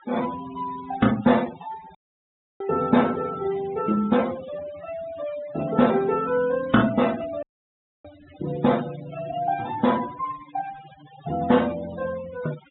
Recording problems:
treble missing; nothing above 3.8 kHz
noise reduction artefacts; signal-to-artefact ratio 16 dB
audio cutting out; at 2 s for 0.5 s and at 7.5 s for 0.5 s

